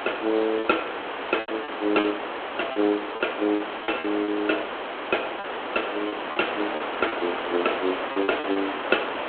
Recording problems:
phone line; 240 Hz to 3.4 kHz, G.726
hiss; SNR 4 dB
lost packets; 10% of the sound replaced, filled with repeated pitch periods

